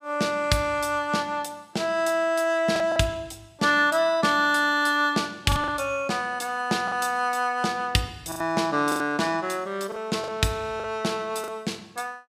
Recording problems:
packet loss; 4% of the sound replaced, filled with the last packet

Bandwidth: 15 kHz